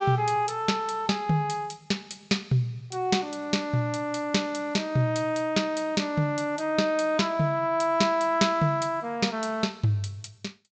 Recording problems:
treble missing; nothing above 8 kHz

